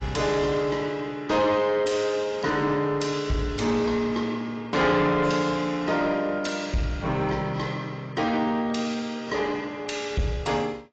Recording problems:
lossy codec; AAC, log-spectral distance 3 dB, nothing above 7.3 kHz
distortion; soft clipping, signal-to-distortion ratio 11 dB

